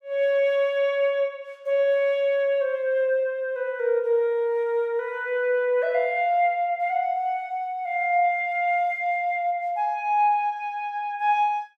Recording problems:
none

